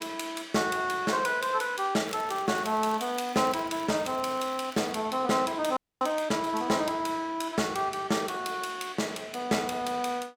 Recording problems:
crackling; from 2 to 5 s; loose cable, SNR 21 dB
audio freezing; at 6 s

